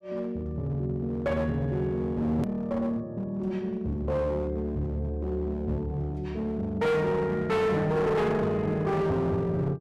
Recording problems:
distorted audio; hard clipping, uneven, signal-to-distortion ratio 7 dB
edit click; at 2.5 s

